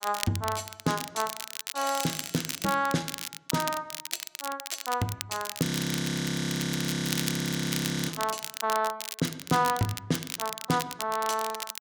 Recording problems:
crackling; vinyl, SNR 6 dB
audio freezing; at 5.5 s for 2.5 s

